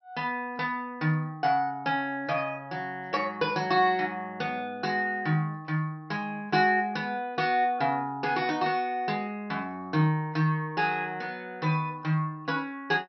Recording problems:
low-pass filter; nothing above 5.7 kHz

